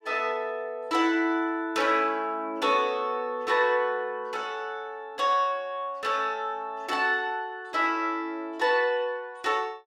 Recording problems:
none

